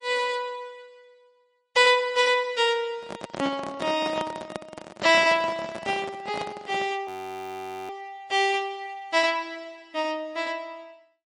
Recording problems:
codec artefacts; MP3, log-spectral distance 2 dB
microphone handling noise; from 3 to 7 s; peak -3 dB vs average level
audio freezing; at 7 s for 1 s

